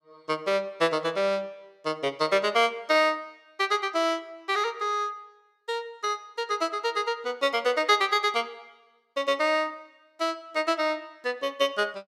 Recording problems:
none

